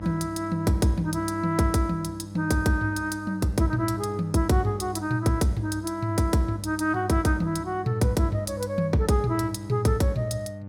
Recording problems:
electrical hum; 50 Hz, harmonics up to 900 Hz, SNR 12 dB

